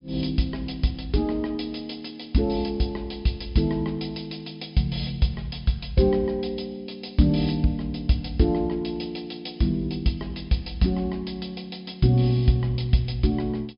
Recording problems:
treble cut off; nothing above 5.5 kHz

